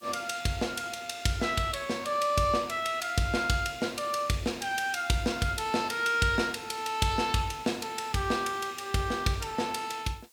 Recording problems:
hiss; slope +1 dB per octave, SNR 27 dB

